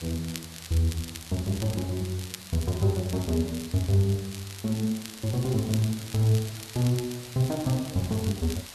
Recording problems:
hiss; slope 0 dB per octave, SNR 15 dB
crackle; vinyl, SNR 14 dB

